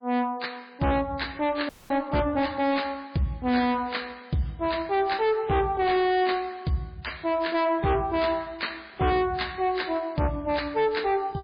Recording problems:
codec artefacts; MP3, log-spectral distance 4 dB, nothing above 4.5 kHz
distortion; soft clipping, signal-to-distortion ratio 6 dB
frozen audio; at 1.5 s

